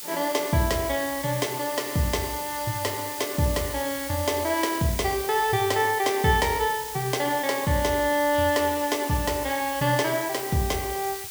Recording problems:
background hiss; slope +3 dB per octave, SNR 8 dB

